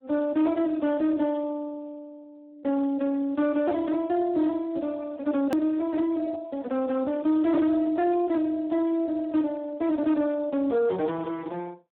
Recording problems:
phone line; 220 Hz to 2.3 kHz, Speex
distortion; soft clipping, signal-to-distortion ratio 11 dB
edit click; at 5.5 s

